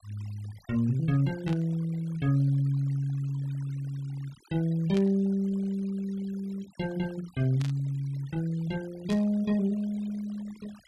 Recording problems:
denoising artefacts; signal-to-artefact ratio 24 dB
burst of static; 4 times, first at 1.5 s; peak -8 dB vs average level

